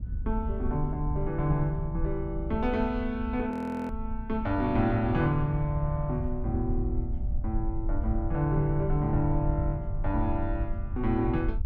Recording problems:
rumble; below 66 Hz, SNR 6 dB
wind on the microphone; below 130 Hz, SNR 13 dB
audio freezing; at 3.5 s

